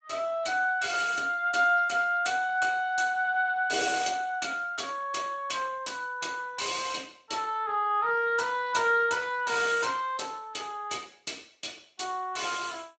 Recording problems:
lossy codec; Speex, log-spectral distance 5 dB, nothing above 7.6 kHz

